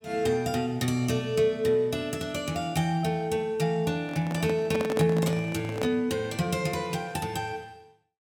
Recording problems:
handling noise; from 4 to 6 s; peak 0 dB vs average level

